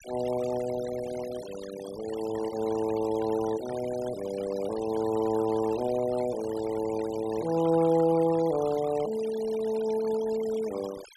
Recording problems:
noise reduction artefacts; signal-to-artefact ratio 16 dB

